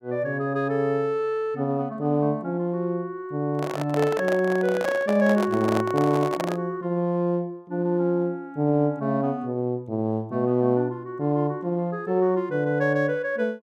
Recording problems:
handling noise; from 3.5 to 6.5 s; peak 0 dB vs average level

